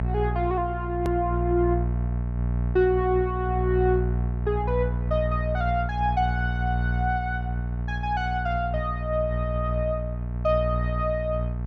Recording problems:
hum; 60 Hz, harmonics up to 660 Hz, SNR 1 dB
click at an edit; at 1 s

